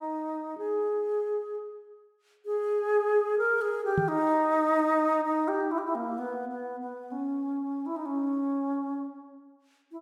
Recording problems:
microphone bump; at 4 s; peak +4 dB vs average level

